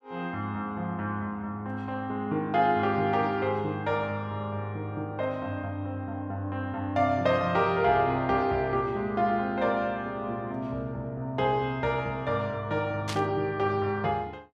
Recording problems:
static burst; at 13 s; peak -2 dB vs average level

